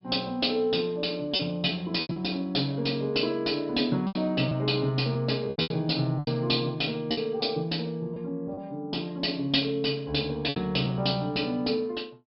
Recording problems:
low-pass filter; nothing above 5.2 kHz
lost packets; 6% of the sound replaced, filled with repeated pitch periods

